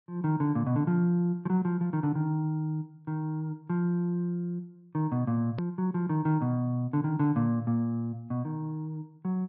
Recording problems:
low-pass filter; nothing above 5.5 kHz
click at an edit; at 5.5 s

